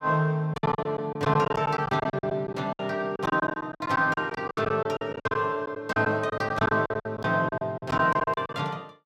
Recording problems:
lost packets; 17% of the sound replaced, filled with silence

